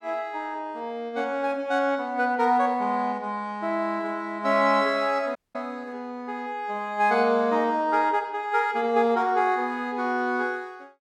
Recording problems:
audio cutting out; at 5.5 s

